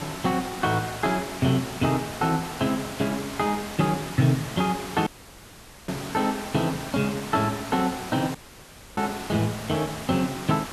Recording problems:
background hiss; slope -3 dB per octave, SNR 10 dB
audio cutting out; at 5 s for 1 s and at 8.5 s for 0.5 s

